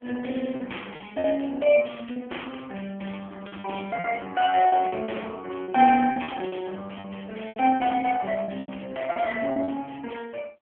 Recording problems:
phone line; 220 Hz to 3.3 kHz, AMR-NB
lost packets; 9% of the sound replaced, filled with repeated pitch periods

